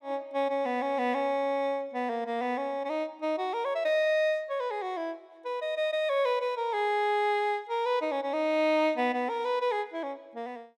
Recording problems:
none

